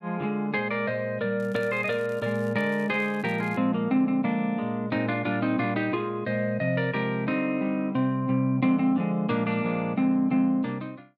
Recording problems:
crackle; from 1.5 to 3.5 s; loose cable, SNR 28 dB

